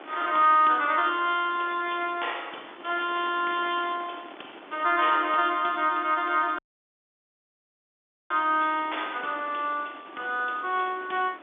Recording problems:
telephone audio; 260 Hz to 3.6 kHz, G.711
wind on the microphone; below 1.9 kHz, SNR 20 dB
audio cutting out; at 6.5 s for 1.5 s

